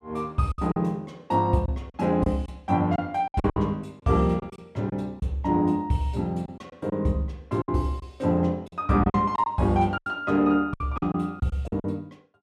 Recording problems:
packet loss; 10% of the sound replaced, filled with silence

